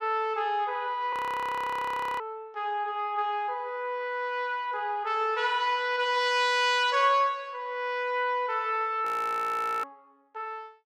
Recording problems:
frozen audio; at 1 s for 1 s and at 9 s for 1 s

